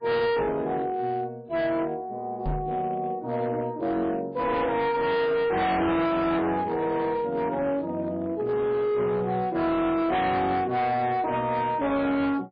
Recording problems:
lossy compression; MP3, log-spectral distance 2 dB, nothing above 4.5 kHz
distortion; hard clipping, signal-to-distortion ratio 7 dB
knock on the microphone; at 2.5 s; peak -1 dB vs average level

